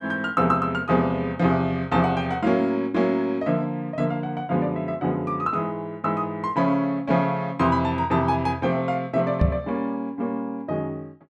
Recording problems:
knock on the microphone; at 9.5 s; peak +7 dB vs average level

